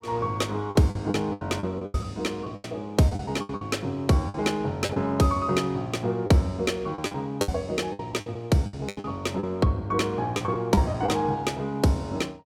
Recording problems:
packet loss; 11% of the sound replaced, filled with the last packet

